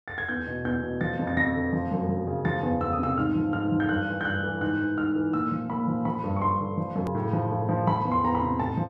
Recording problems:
edit click; at 7 s

